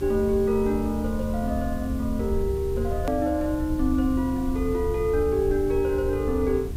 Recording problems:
hum; 60 Hz, harmonics up to 1.1 kHz, SNR 15 dB
background hiss; slope -4 dB per octave, SNR 22 dB
low-frequency rumble; below 72 Hz, SNR 8 dB
edit click; at 3 s

